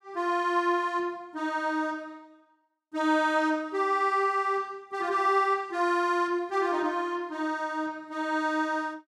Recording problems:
none

